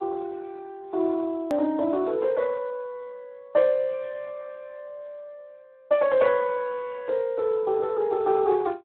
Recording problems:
phone line; 170 Hz to 2.8 kHz, Speex
hard cut with a click; at 1.5 s

